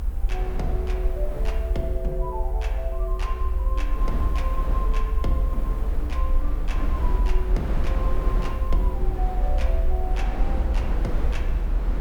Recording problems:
background hiss; SNR 22 dB
low-frequency rumble; below 58 Hz, SNR -8 dB
wind on the microphone; below 530 Hz, SNR 1 dB

